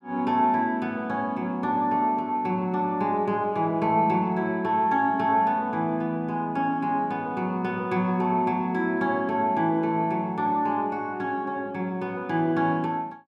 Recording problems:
none

